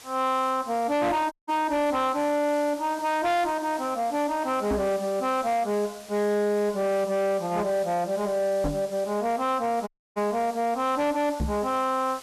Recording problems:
distorted audio; soft clipping, signal-to-distortion ratio 11 dB
hiss; slope 0 dB per octave, SNR 19 dB
dropout; at 1.5 s and at 10 s
microphone thump; at 4.5 s, at 8.5 s and at 11 s; peak +1 dB vs average level

